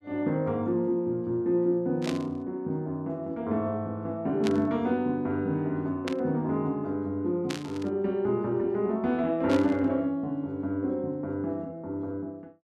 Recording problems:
burst of static; 5 times, first at 2 s; peak -2 dB vs average level

